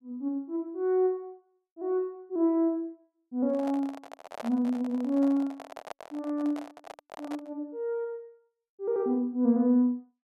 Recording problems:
handling noise; from 3.5 to 7.5 s; peak -5 dB vs average level

